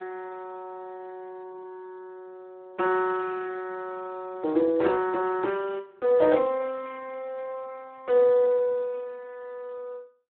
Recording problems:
telephone audio; 300 Hz to 2.5 kHz, Speex

